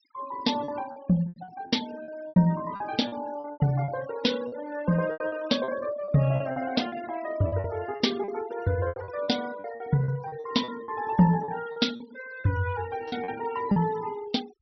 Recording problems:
treble missing; nothing above 5.8 kHz
denoising artefacts; signal-to-artefact ratio 17 dB
packet loss; 13% of the sound replaced, filled with repeated pitch periods

